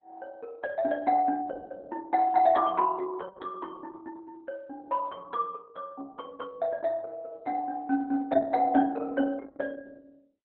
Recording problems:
lossy codec; Opus, log-spectral distance 3 dB, nothing above 3.7 kHz

